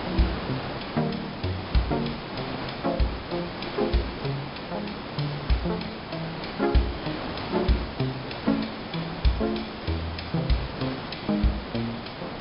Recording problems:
treble missing; nothing above 5.5 kHz
background hiss; slope -5 dB per octave, SNR 5 dB

